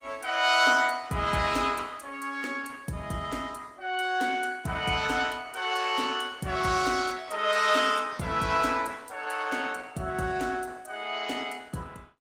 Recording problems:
lossy codec; Opus, log-spectral distance 5 dB

